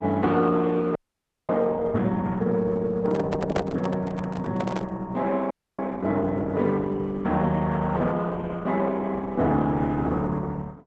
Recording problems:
codec artefacts; Opus, log-spectral distance 3 dB
frozen audio; at 1 s for 0.5 s and at 5.5 s
microphone handling noise; from 3 to 5 s; peak 0 dB vs average level

